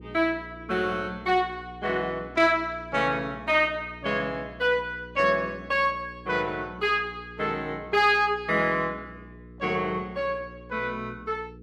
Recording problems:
hum; 60 Hz, harmonics up to 480 Hz, SNR 20 dB

